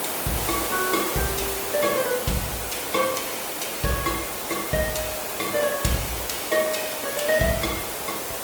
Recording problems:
lossy codec; Opus, log-spectral distance 9 dB, nothing above 19 kHz
hiss; slope -4 dB per octave, SNR 1 dB

